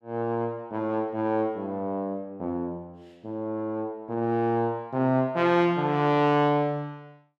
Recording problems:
none

